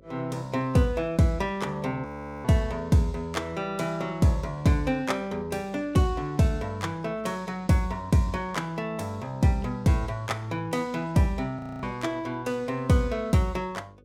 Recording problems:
hum; 50 Hz, harmonics up to 550 Hz, SNR 28 dB
audio freezing; at 2 s and at 12 s

